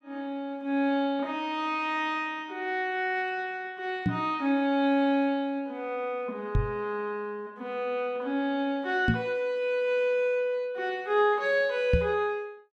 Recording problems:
microphone bump; 4 times, first at 4 s; peak +7 dB vs average level

